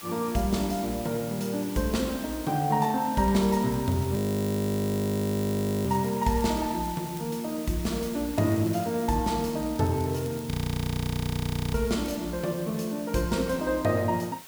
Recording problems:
background hiss; slope -1 dB per octave, SNR 14 dB
crackle; from 3 to 7.5 s and from 8.5 to 12 s; loose cable, SNR 20 dB
frozen audio; at 4 s for 1.5 s and at 11 s for 1 s

